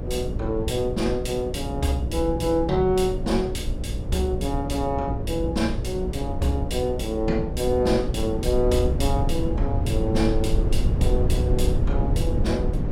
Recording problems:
hum; 60 Hz, harmonics up to 600 Hz, SNR 9 dB
low-frequency rumble; below 110 Hz, SNR 3 dB

